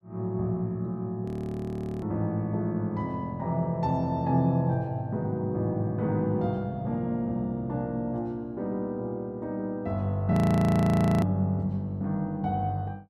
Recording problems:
audio freezing; at 1.5 s for 1 s and at 10 s for 1 s

